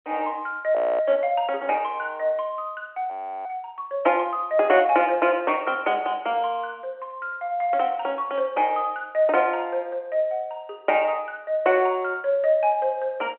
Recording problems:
phone line; 260 Hz to 3.3 kHz, G.711
frozen audio; at 1 s and at 3 s

